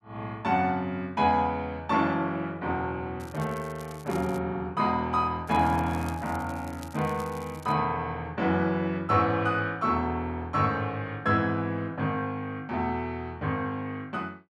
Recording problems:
crackle; from 3 to 4.5 s and from 5.5 to 7.5 s; loose cable, SNR 22 dB

